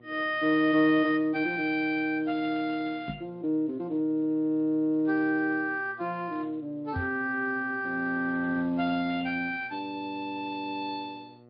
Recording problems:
treble missing; nothing above 4.4 kHz
lossy compression; Speex, log-spectral distance 2 dB
hum; 60 Hz, harmonics up to 1.3 kHz, SNR 25 dB
microphone bump; at 3 s and at 7 s; peak -3 dB vs average level

